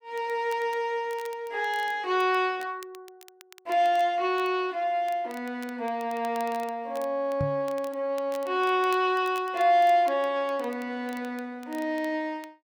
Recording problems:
crackling; vinyl, SNR 24 dB
knock on the microphone; at 7.5 s; peak 0 dB vs average level

